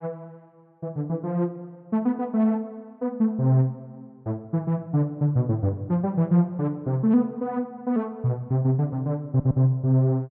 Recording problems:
audio stuttering; at 9.5 s

